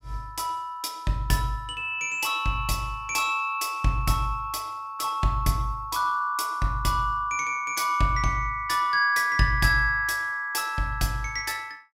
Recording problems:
none

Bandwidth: 16 kHz